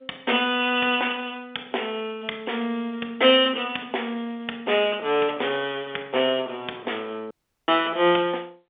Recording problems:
phone line; 300 Hz to 3.6 kHz, G.711
audio cutting out; at 7.5 s

